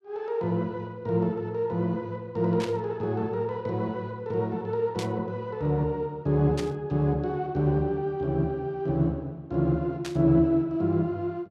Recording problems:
static burst; 4 times, first at 2.5 s; peak -5 dB vs average level

